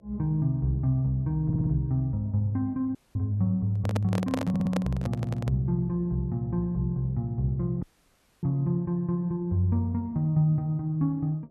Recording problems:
hum; 60 Hz, harmonics up to 660 Hz, SNR 34 dB
stutter; at 1.5 s, at 4.5 s and at 5 s
dropout; at 3 s and at 8 s for 0.5 s
handling noise; from 4 to 5.5 s; peak +1 dB vs average level

